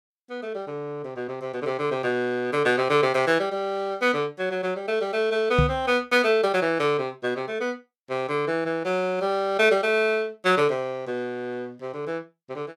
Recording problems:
knock on the microphone; at 5.5 s; peak +6 dB vs average level

